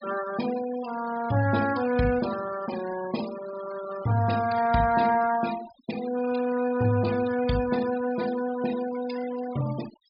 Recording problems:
low-pass filter; nothing above 5.5 kHz
denoising artefacts; signal-to-artefact ratio 14 dB

